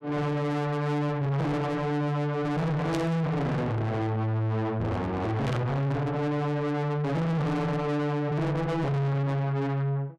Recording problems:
distortion; soft clipping, signal-to-distortion ratio 6 dB
static burst; at 3 s and at 5.5 s; peak -6 dB vs average level

